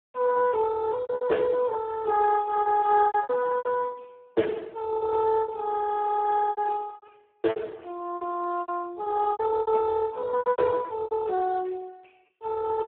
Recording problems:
phone line; 240 Hz to 3.7 kHz, Speex
packet loss; 13% of the sound replaced, filled with repeated pitch periods

